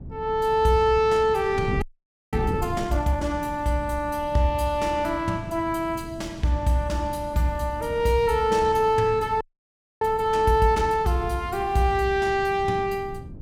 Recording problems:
wind noise; below 200 Hz, SNR 14 dB
audio freezing; at 2 s for 0.5 s and at 9.5 s for 0.5 s

